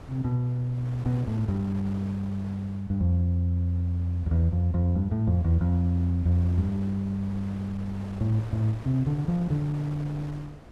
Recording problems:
wind on the microphone; below 630 Hz, SNR 17 dB

